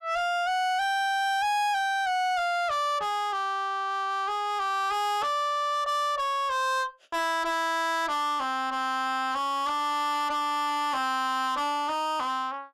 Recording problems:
distorted audio; soft clipping, signal-to-distortion ratio 6 dB

